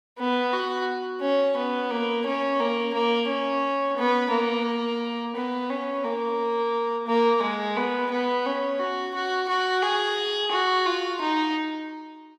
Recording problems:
none

